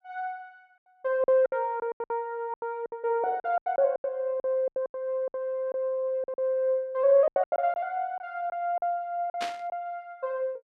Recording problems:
lost packets; 13% of the sound replaced, filled with silence
burst of static; at 9.5 s; peak -2 dB vs average level

